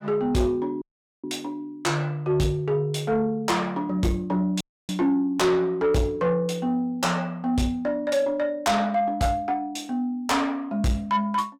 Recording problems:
distorted audio; soft clipping, signal-to-distortion ratio 10 dB
audio cutting out; at 1 s and at 4.5 s

